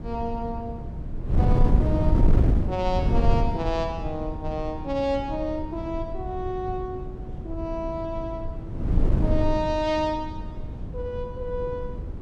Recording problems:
wind on the microphone; below 120 Hz, SNR -1 dB

